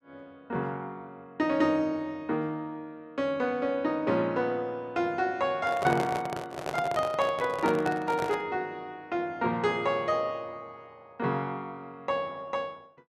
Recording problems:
microphone handling noise; from 5.5 to 8.5 s; peak 0 dB vs average level

